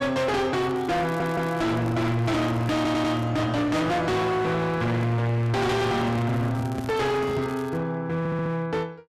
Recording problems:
distortion; hard clipping, signal-to-distortion ratio 6 dB
crackling; from 0.5 to 3.5 s and from 6.5 to 8 s; loose cable, SNR 24 dB
audio stuttering; at 1 s, at 3 s and at 8 s
handling noise; from 4.5 to 7.5 s; peak -3 dB vs average level

